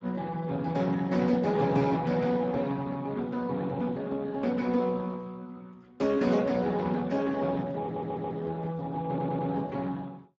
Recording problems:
lossy codec; Speex, log-spectral distance 3 dB
stutter; at 8 s and at 9 s

